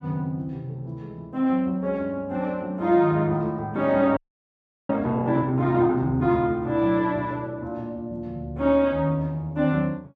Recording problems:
audio freezing; at 4 s for 0.5 s

